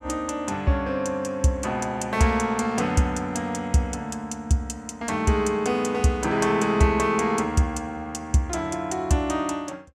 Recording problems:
none

